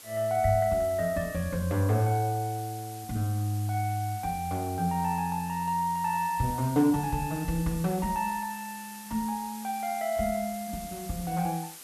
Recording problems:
background hiss; slope 0 dB per octave, SNR 14 dB

